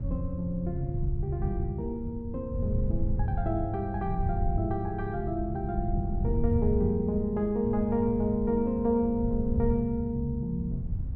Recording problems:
wind noise; below 110 Hz, SNR 4 dB

